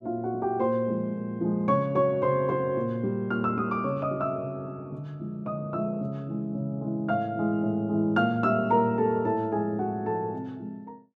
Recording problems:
none

